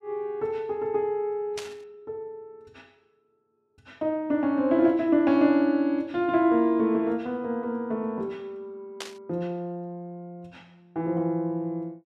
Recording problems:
burst of static; at 1.5 s and at 9 s; peak -5 dB vs average level

